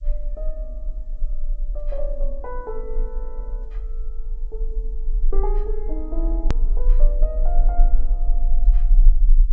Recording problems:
low-pass filter; nothing above 8 kHz
hiss; SNR 42 dB
rumble; below 34 Hz, strongest tone 28 Hz, SNR -11 dB
click at an edit; at 6.5 s

